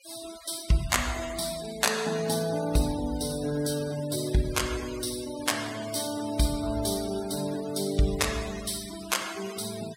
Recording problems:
denoising artefacts; signal-to-artefact ratio 14 dB

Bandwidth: 16 kHz